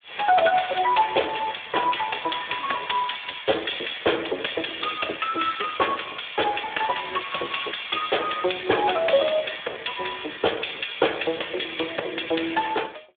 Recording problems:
telephone audio; 340 Hz to 3.6 kHz, Speex

